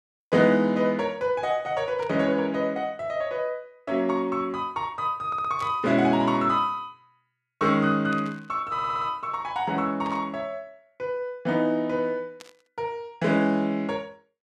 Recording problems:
static burst; 5 times, first at 2 s; peak -13 dB vs average level
audio stuttering; at 5.5 s and at 8.5 s

